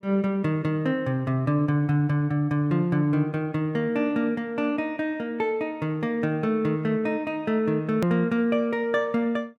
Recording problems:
hard cut with a click; at 8 s

